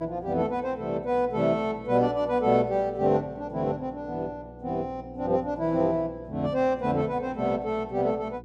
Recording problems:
hum; 60 Hz, harmonics up to 420 Hz, SNR 20 dB

